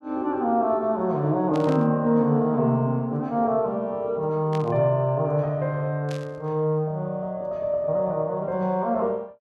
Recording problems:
burst of static; at 1.5 s, at 4.5 s and at 6 s; peak -10 dB vs average level

